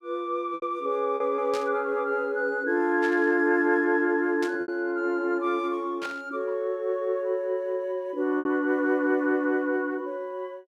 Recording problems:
lost packets; 3% of the sound replaced, filled with repeated pitch periods
static burst; 4 times, first at 1.5 s; peak -7 dB vs average level

